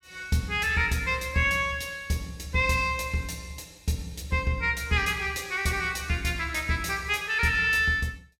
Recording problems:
none

